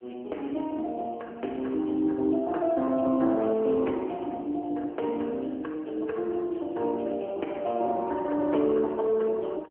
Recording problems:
phone line; 240 Hz to 3.2 kHz, AMR-NB

